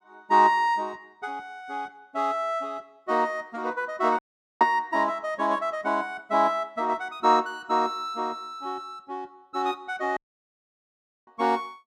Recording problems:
dropout; at 4 s and at 10 s for 1 s

